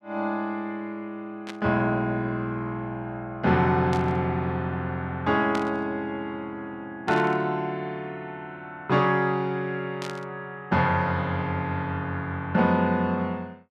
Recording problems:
static burst; 5 times, first at 1.5 s; peak -5 dB vs average level

